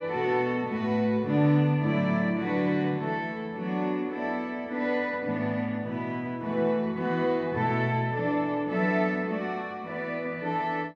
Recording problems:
none

